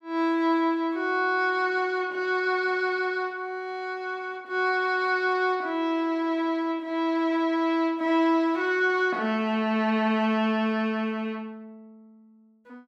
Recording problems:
none

